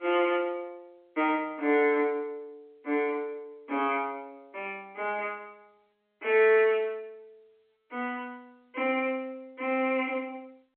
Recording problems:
phone line; 260 Hz to 3.4 kHz, G.711

